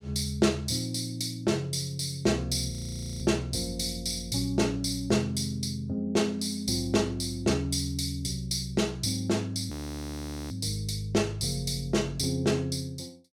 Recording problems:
audio freezing; at 2.5 s for 0.5 s and at 9.5 s for 1 s

